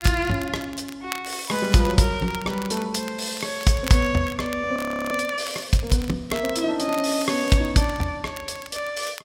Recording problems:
crackle; vinyl, SNR 16 dB
frozen audio; at 5 s

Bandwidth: 16 kHz